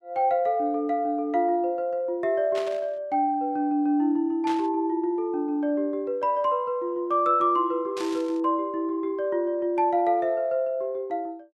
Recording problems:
burst of static; at 2.5 s, at 4.5 s and at 8 s; peak -8 dB vs average level

